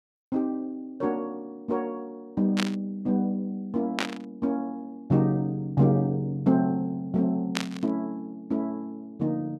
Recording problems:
burst of static; at 2.5 s, at 4 s and at 7.5 s; peak +4 dB vs average level

